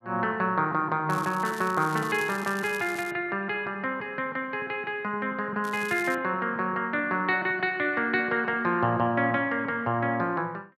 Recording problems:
crackle; from 1 to 3 s and at 5.5 s; loose cable, SNR 17 dB

